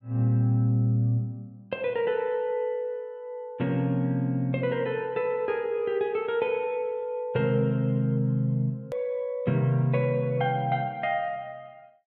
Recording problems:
edit click; at 9 s

